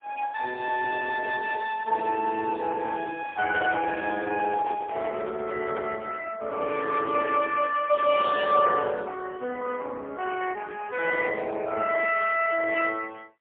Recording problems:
telephone audio; 280 Hz to 3.5 kHz, AMR-NB, then MP3
microphone handling noise; from 3.5 to 6 s; peak -6 dB vs average level

